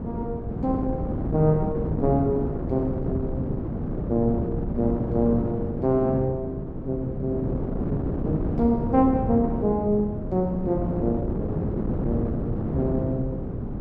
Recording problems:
hum; 60 Hz, harmonics up to 480 Hz, SNR 20 dB
wind noise; below 320 Hz, SNR 2 dB

